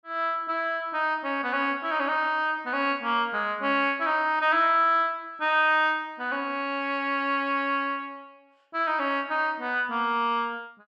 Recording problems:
none

